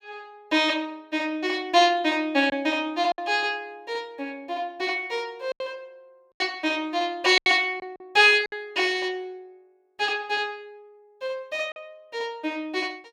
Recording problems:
packet loss; 4% of the sound replaced, filled with silence

